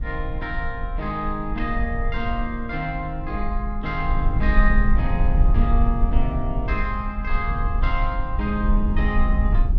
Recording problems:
low-frequency rumble; below 58 Hz, SNR -2 dB

